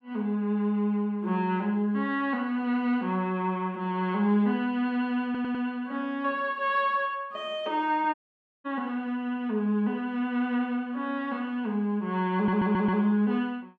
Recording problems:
audio stuttering; at 5.5 s and at 12 s
dropout; at 8 s for 0.5 s

